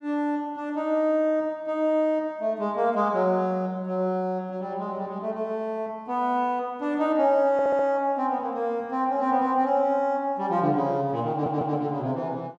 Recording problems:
stutter; at 7.5 s and at 11 s

